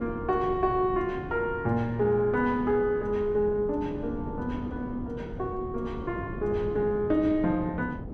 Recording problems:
wind on the microphone; below 320 Hz, SNR 11 dB

